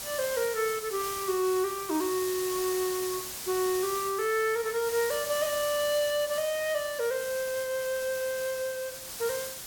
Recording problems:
background hiss; slope 0 dB per octave, SNR 7 dB

